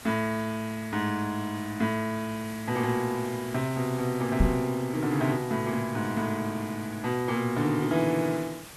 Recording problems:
background hiss; slope -1 dB per octave, SNR 16 dB
microphone thump; at 4.5 s; peak +8 dB vs average level

